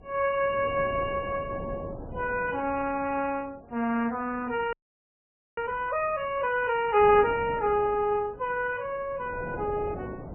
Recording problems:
lossy compression; Vorbis, then MP3, log-spectral distance 2 dB, nothing above 2.5 kHz
wind on the microphone; below 550 Hz, SNR 16 dB
audio freezing; at 4.5 s for 1 s

